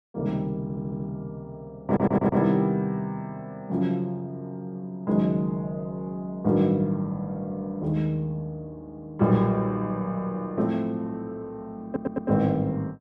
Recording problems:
audio stuttering; at 0.5 s, at 2 s and at 12 s

